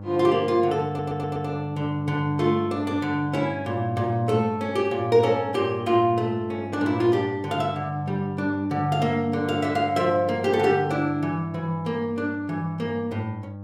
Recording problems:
electrical hum; 50 Hz, harmonics up to 1.1 kHz, SNR 14 dB
stutter; at 1 s

